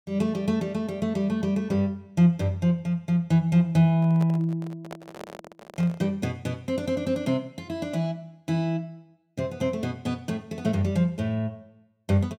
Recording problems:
microphone handling noise; from 4 to 6 s; peak -8 dB vs average level

